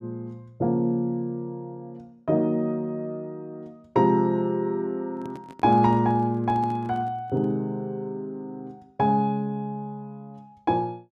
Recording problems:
microphone handling noise; from 5 to 7.5 s; peak -11 dB vs average level

